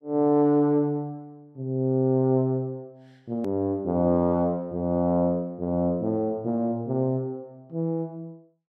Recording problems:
hard cut with a click; at 3.5 s

